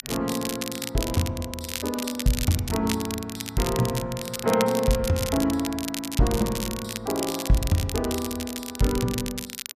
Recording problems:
crackling; vinyl, SNR 7 dB

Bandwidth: 14.5 kHz